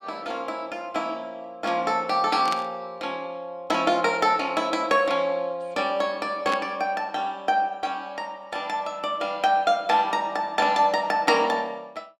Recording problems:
burst of static; at 2.5 s and at 6.5 s; peak -2 dB vs average level

